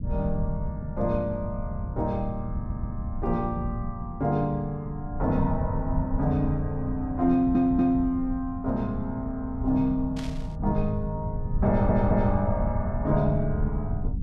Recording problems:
low-frequency rumble; below 120 Hz, SNR 6 dB
audio stuttering; at 2.5 s, at 7.5 s and at 12 s
static burst; at 10 s; peak -9 dB vs average level

